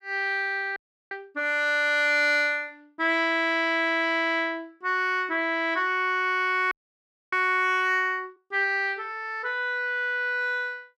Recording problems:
audio freezing; at 1 s and at 6.5 s for 0.5 s

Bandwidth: 14.5 kHz